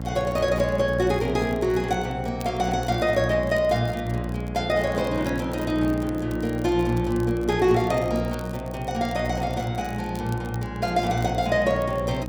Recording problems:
mains hum; 60 Hz, harmonics up to 840 Hz, SNR 7 dB
crackle; vinyl, SNR 24 dB

